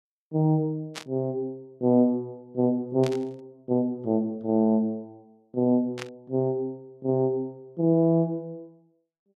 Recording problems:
burst of static; at 1 s, at 3 s and at 6 s; peak -5 dB vs average level

